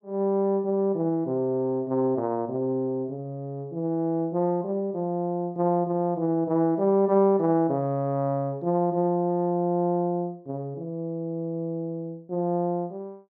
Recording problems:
none

